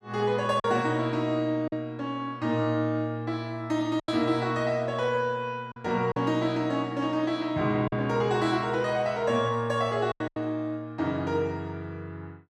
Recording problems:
lost packets; 4% of the sound replaced, filled with silence

